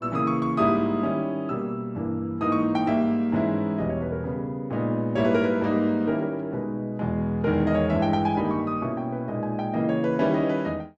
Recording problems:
none

